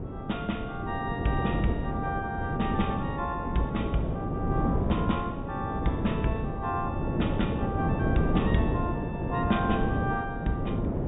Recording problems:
low-pass filter; nothing above 4 kHz
wind noise; below 350 Hz, SNR -2 dB

